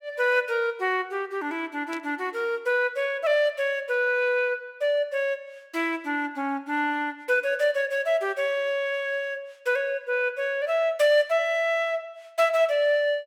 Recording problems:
burst of static; at 2 s; peak -11 dB vs average level

